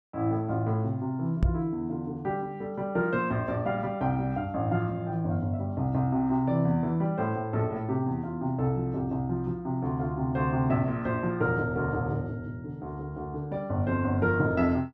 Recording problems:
microphone thump; at 1.5 s; peak +7 dB vs average level

